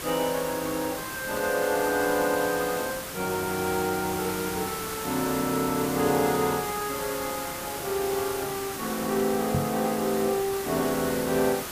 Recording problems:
hiss; slope -3 dB per octave, SNR 6 dB
microphone bump; at 9.5 s; peak +3 dB vs average level

